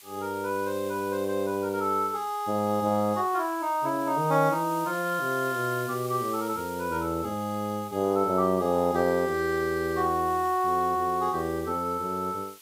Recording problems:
background hiss; slope +3 dB per octave, SNR 18 dB

